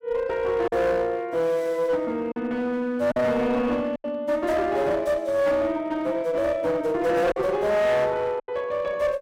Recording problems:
distortion; hard clipping, uneven, signal-to-distortion ratio 9 dB
lost packets; 3% of the sound replaced, filled with silence

